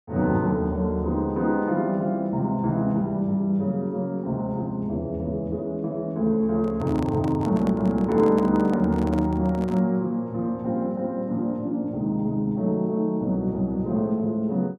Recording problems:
microphone handling noise; from 6.5 to 10 s; peak -7 dB vs average level

